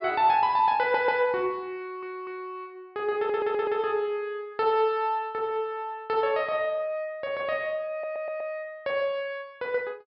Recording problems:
treble missing; nothing above 5.5 kHz
stutter; 4 times, first at 1 s

